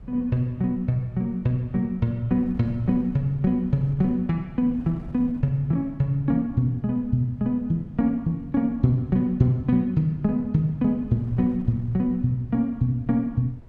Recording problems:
wind on the microphone; below 130 Hz, SNR 21 dB

